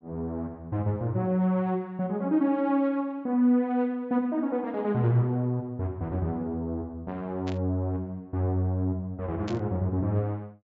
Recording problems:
low-pass filter; nothing above 8 kHz
burst of static; at 7.5 s and at 9.5 s; peak -9 dB vs average level

